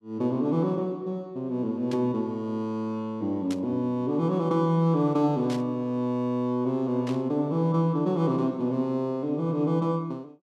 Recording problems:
static burst; 4 times, first at 2 s; peak -9 dB vs average level

